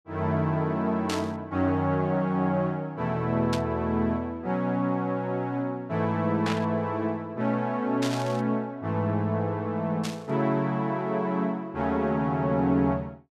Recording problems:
static burst; 5 times, first at 1 s; peak -2 dB vs average level

